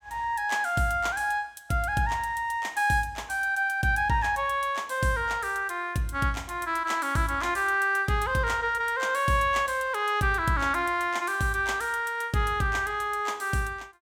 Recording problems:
none

